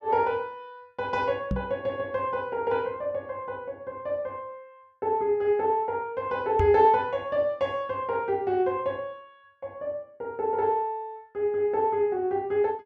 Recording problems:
microphone bump; at 1.5 s and at 6.5 s; peak +2 dB vs average level

